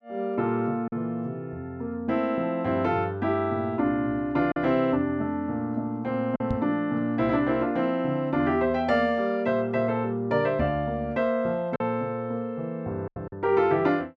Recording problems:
packet loss; 2% of the sound replaced, filled with silence
microphone thump; at 6.5 s; peak 0 dB vs average level

